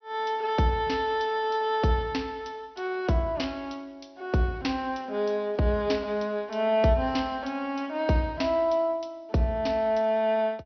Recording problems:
treble missing; nothing above 5.9 kHz

